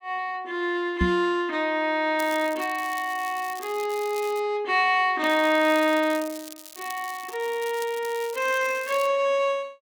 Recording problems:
microphone thump; at 1 s; peak +4 dB vs average level
crackle; from 2 to 4.5 s and from 5 to 9 s; loose cable, SNR 17 dB

